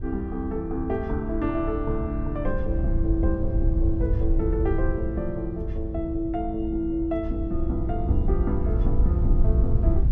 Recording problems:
wind on the microphone; below 80 Hz, SNR -1 dB

